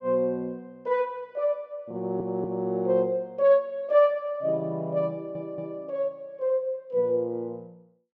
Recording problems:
stutter; at 2 s and at 5 s

